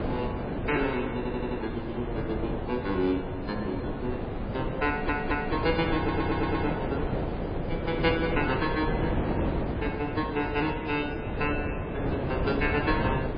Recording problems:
lossy compression; MP3, log-spectral distance 3 dB, nothing above 4.8 kHz
wind noise; below 520 Hz, SNR 2 dB
audio stuttering; at 1 s, at 5 s and at 6 s

